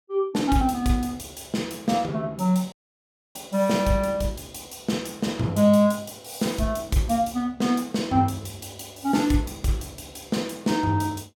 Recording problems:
dropout; at 2.5 s for 0.5 s

